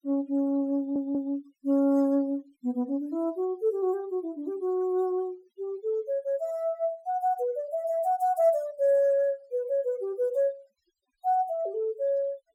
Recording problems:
noise reduction artefacts; signal-to-artefact ratio 27 dB
audio stuttering; at 1 s

